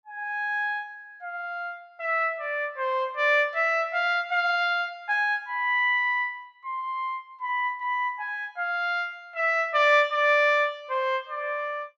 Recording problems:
none

